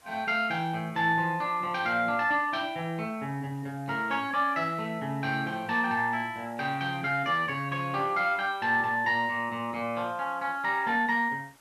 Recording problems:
hiss; slope -2 dB per octave, SNR 29 dB

